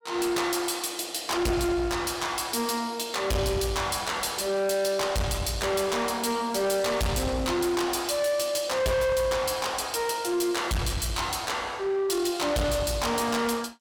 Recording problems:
distorted audio; soft clipping, signal-to-distortion ratio 7 dB

